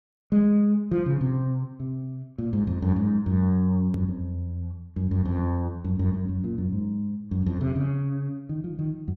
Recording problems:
hard cut with a click; at 4 s

